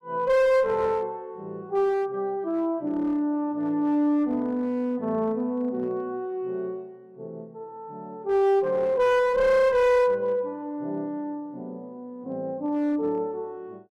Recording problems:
distortion; hard clipping, uneven, signal-to-distortion ratio 10 dB

